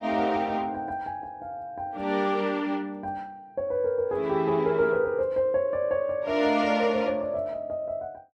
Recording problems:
none

